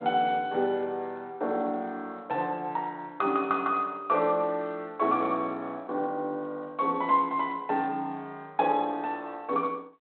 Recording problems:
phone line; 240 Hz to 3.8 kHz, G.726

